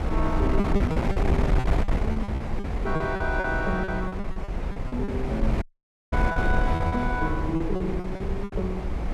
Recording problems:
wind on the microphone; below 190 Hz, SNR -2 dB
lost packets; 14% of the sound replaced, filled with repeated pitch periods
audio cutting out; at 5.5 s for 0.5 s

